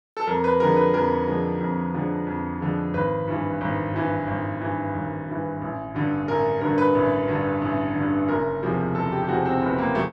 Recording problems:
none

